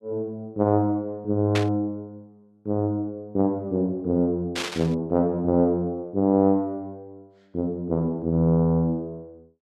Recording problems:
static burst; at 1.5 s and at 4.5 s; peak 0 dB vs average level

